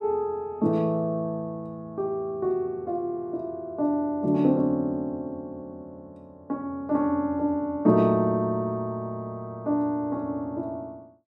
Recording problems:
none

